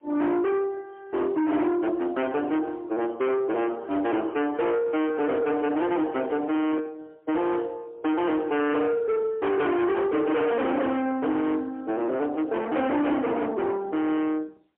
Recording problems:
telephone audio; 260 Hz to 3.5 kHz, AMR-NB, then MP3
distortion; soft clipping, signal-to-distortion ratio 6 dB
handling noise; from 5 to 7 s; peak -5 dB vs average level

